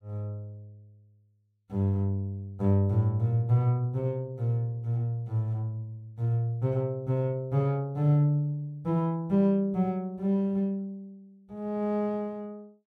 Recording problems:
none

